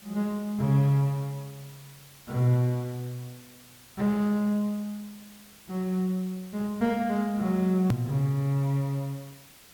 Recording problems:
background hiss; slope -1 dB per octave, SNR 22 dB
hard cut with a click; at 8 s

